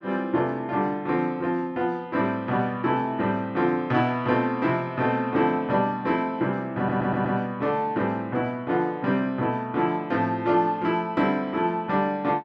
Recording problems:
audio stuttering; at 7 s

